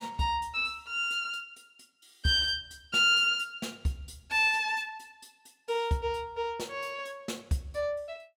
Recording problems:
none

